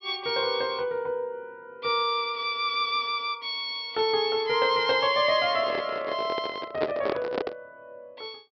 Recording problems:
low-pass filter; nothing above 5.5 kHz
handling noise; from 5.5 to 7.5 s; peak +2 dB vs average level

